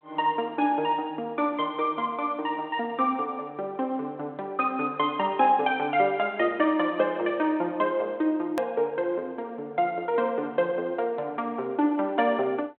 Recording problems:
phone line; 260 Hz to 3.5 kHz, G.726
edit click; at 8.5 s

